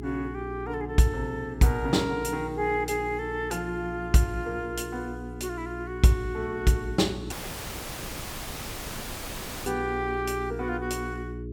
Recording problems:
hum; 60 Hz, harmonics up to 420 Hz, SNR 10 dB
dropout; at 7.5 s for 2.5 s

